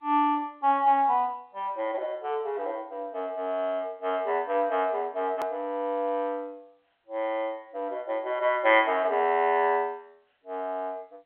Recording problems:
telephone audio; 340 Hz to 3.5 kHz, G.711
hard cut with a click; at 5.5 s

